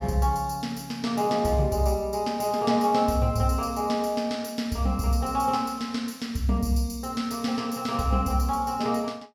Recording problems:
none

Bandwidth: 17 kHz